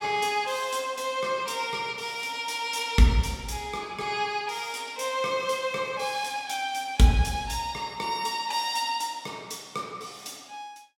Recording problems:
none

